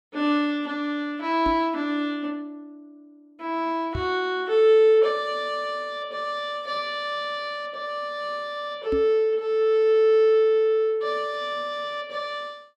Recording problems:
microphone bump; at 1.5 s, at 4 s and at 9 s; peak -3 dB vs average level

